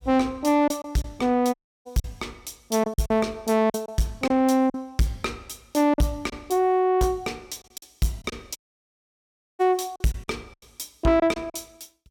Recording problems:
distortion; soft clipping, signal-to-distortion ratio 11 dB
packet loss; 8% of the sound replaced, filled with silence
audio cutting out; at 1.5 s and at 8.5 s for 1 s

